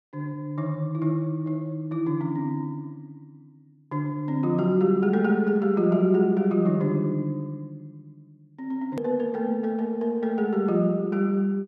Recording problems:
edit click; at 9 s

